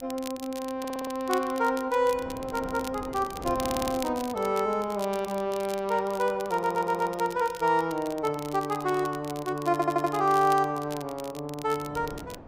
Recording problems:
wind noise; below 620 Hz, SNR 20 dB
crackling; vinyl, SNR 16 dB
audio stuttering; 4 times, first at 1 s

